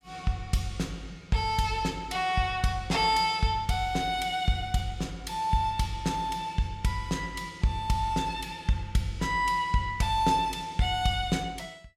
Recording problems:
none

